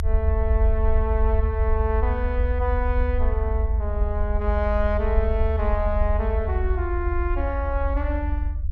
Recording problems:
low-frequency rumble; below 74 Hz, SNR -3 dB

